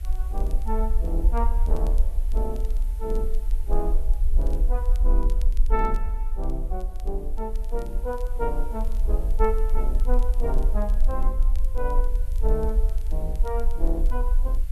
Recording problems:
background hiss; slope -3 dB per octave, SNR 21 dB
low-frequency rumble; below 44 Hz, strongest tone 22 Hz, SNR -6 dB
crackling; vinyl, SNR 24 dB

